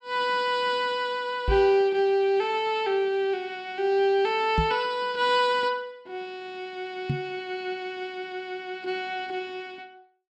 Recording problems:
knock on the microphone; at 1.5 s, at 4.5 s and at 7 s; peak +3 dB vs average level

